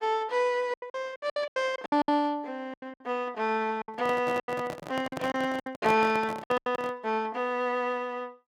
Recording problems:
packet loss; 13% of the sound replaced, filled with silence
microphone handling noise; from 4 to 7 s; peak 0 dB vs average level

